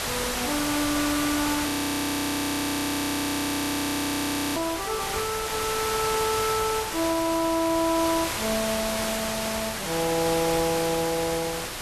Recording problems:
hiss; slope -2 dB per octave, SNR 1 dB
audio freezing; at 1.5 s for 3 s

